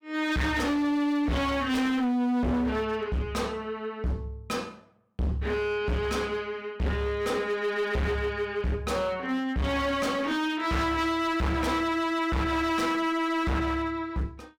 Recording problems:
distorted audio; hard clipping, uneven, signal-to-distortion ratio 7 dB

